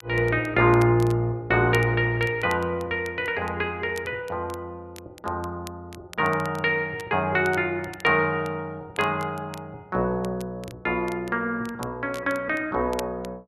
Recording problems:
crackle; vinyl, SNR 22 dB

